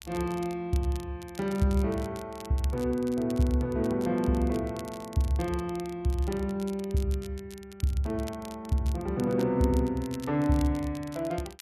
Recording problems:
crackling; vinyl, SNR 20 dB

